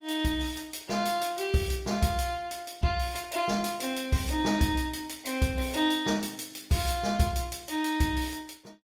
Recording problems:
lossy codec; Opus, log-spectral distance 5 dB

